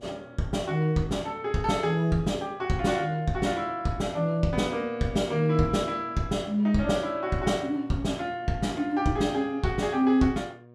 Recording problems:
hum; 60 Hz, harmonics up to 1.2 kHz, SNR 25 dB

